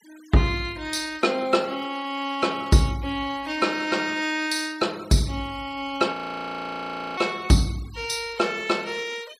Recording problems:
noise reduction artefacts; signal-to-artefact ratio 21 dB
audio freezing; at 6 s for 1 s

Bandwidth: 15.5 kHz